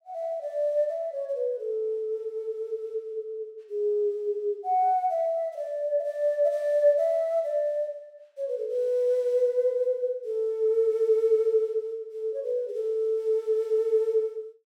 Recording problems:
none

